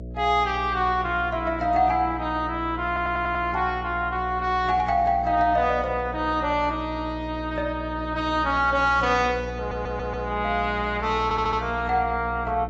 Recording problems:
lossy codec; AAC, log-spectral distance 2 dB, nothing above 6.7 kHz
hum; 60 Hz, harmonics up to 660 Hz, SNR 12 dB
stutter; at 3 s, at 9.5 s and at 11 s

